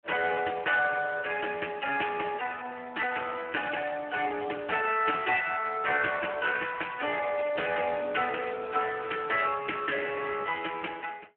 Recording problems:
telephone audio; 240 Hz to 3.2 kHz, Speex

